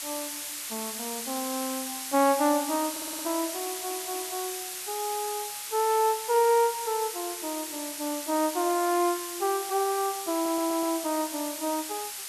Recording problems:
hiss; slope +3 dB per octave, SNR 5 dB
audio stuttering; at 3 s, at 3.5 s and at 10 s

